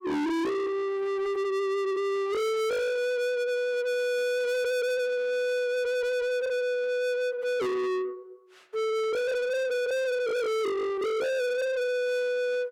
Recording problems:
distortion; soft clipping, signal-to-distortion ratio 6 dB

